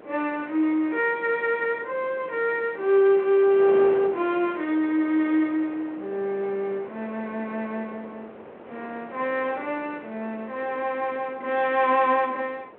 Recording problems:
phone line; 260 Hz to 3.4 kHz, G.726
wind noise; below 810 Hz, SNR 18 dB

